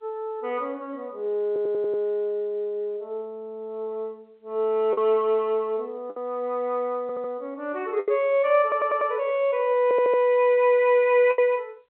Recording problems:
telephone audio; 320 Hz to 3.3 kHz, G.711
packet loss; 2% of the sound replaced, filled with the last packet
stutter; 4 times, first at 1.5 s

